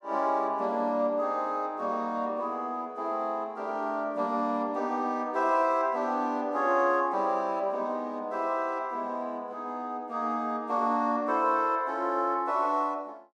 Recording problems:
none

